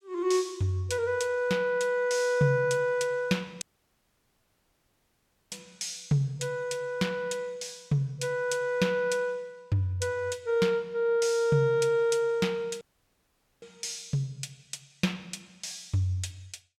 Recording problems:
dropout; at 3.5 s for 2 s and at 13 s for 1 s

